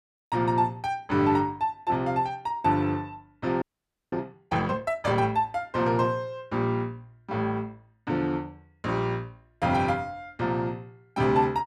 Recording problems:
audio freezing; at 3.5 s for 0.5 s

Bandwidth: 14.5 kHz